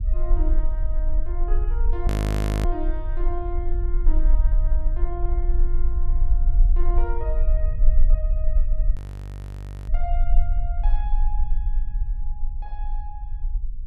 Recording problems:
rumble; below 42 Hz, strongest tone 18 Hz, SNR -12 dB
audio freezing; at 2 s for 0.5 s and at 9 s for 1 s

